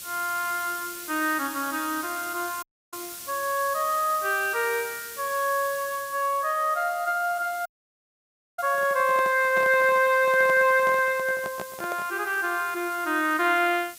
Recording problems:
hiss; SNR 14 dB
audio cutting out; at 2.5 s and at 7.5 s for 1 s
microphone handling noise; from 8.5 to 12 s; peak -7 dB vs average level

